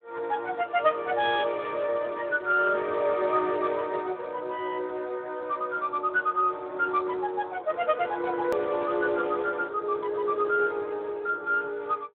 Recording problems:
telephone audio; 320 Hz to 2.9 kHz, Speex
hard cut with a click; at 8.5 s

